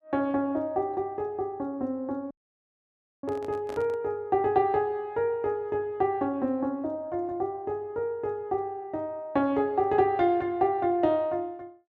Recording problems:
dropout; at 2.5 s for 1 s
handling noise; at 3 s; peak -10 dB vs average level

